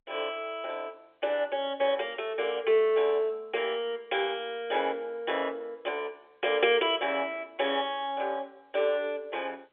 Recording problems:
telephone audio; 340 Hz to 3.5 kHz, G.711

